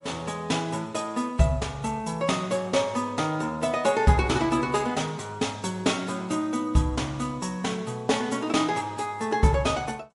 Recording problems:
lossy compression; MP3, log-spectral distance 3 dB, nothing above 10.7 kHz

